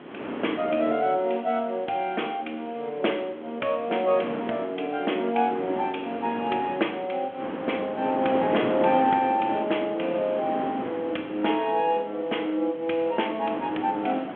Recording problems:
phone line; 220 Hz to 3.4 kHz, G.726
background hiss; SNR 29 dB
wind noise; below 840 Hz, SNR 8 dB

